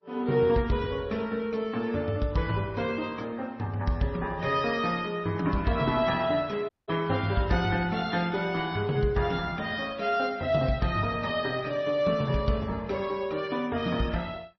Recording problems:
codec artefacts; Opus, then MP3, log-spectral distance 3 dB, nothing above 5.2 kHz
audio cutting out; at 6.5 s

